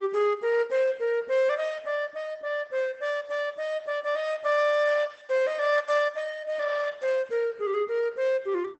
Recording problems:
lossy compression; Opus, log-spectral distance 3 dB, nothing above 8 kHz

